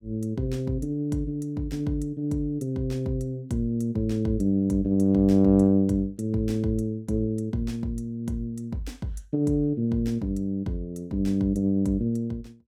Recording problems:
none

